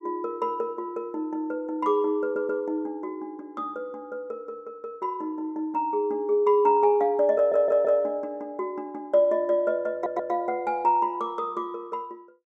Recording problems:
audio stuttering; at 2 s, at 7.5 s and at 10 s

